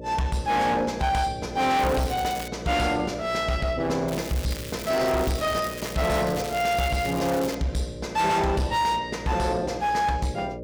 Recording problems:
distortion; hard clipping, uneven, signal-to-distortion ratio 8 dB
mains hum; 60 Hz, harmonics up to 600 Hz, SNR 13 dB
crackling; at 2 s and from 4 to 7.5 s; loose cable, SNR 12 dB

